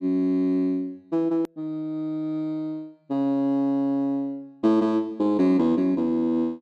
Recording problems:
click at an edit; at 1.5 s

